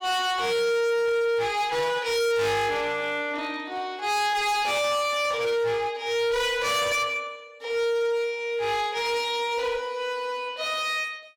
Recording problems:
distortion; hard clipping, uneven, signal-to-distortion ratio 6 dB

